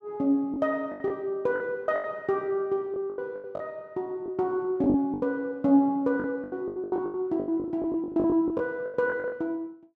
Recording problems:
lost packets; 16% of the sound replaced, filled with the last packet

